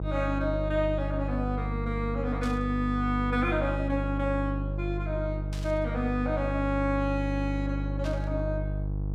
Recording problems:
hum; 50 Hz, harmonics up to 500 Hz, SNR 2 dB
static burst; at 2.5 s, at 5.5 s and at 8 s; peak -9 dB vs average level

